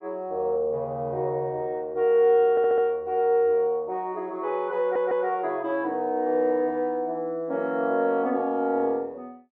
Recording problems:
stutter; at 2.5 s and at 5 s

